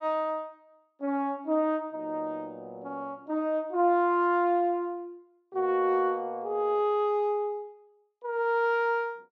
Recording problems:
none

